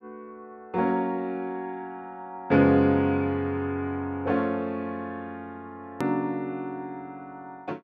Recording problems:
hard cut with a click; at 6 s

